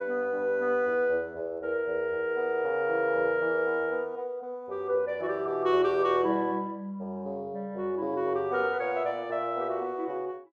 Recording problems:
none

